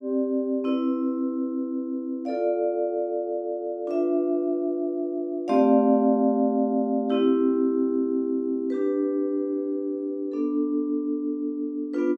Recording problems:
none

